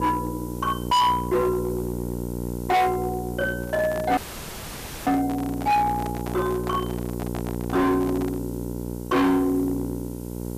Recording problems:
distortion; hard clipping, signal-to-distortion ratio 7 dB
hum; 60 Hz, harmonics up to 1.1 kHz, SNR 7 dB
background hiss; SNR 20 dB
handling noise; from 3.5 to 8.5 s; peak -7 dB vs average level
dropout; at 4 s for 1 s

